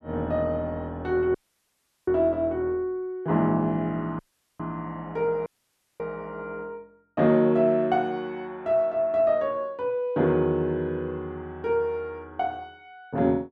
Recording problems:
dropout; at 1.5 s for 0.5 s, at 4 s and at 5.5 s for 0.5 s

